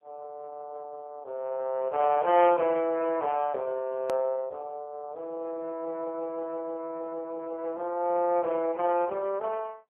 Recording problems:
phone line; 340 Hz to 3.1 kHz, AMR-NB
edit click; at 4 s

